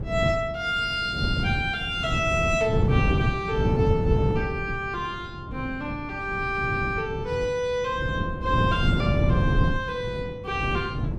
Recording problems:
wind noise; below 200 Hz, SNR 1 dB

